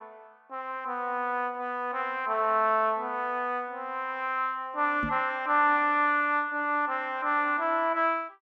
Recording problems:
microphone bump; at 5 s; peak -3 dB vs average level

